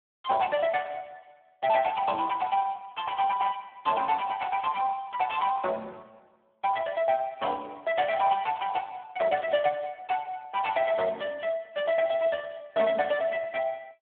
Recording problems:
telephone audio; 300 Hz to 3 kHz, Speex

